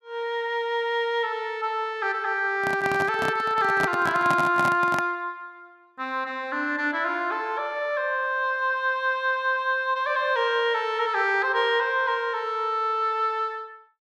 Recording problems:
handling noise; from 2.5 to 5 s; peak +1 dB vs average level

